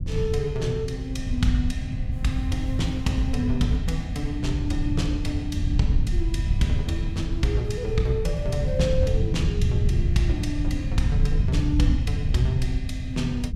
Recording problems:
rumble; below 110 Hz, SNR 0 dB

